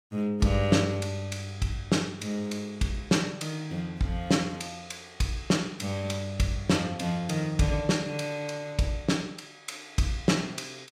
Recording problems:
none

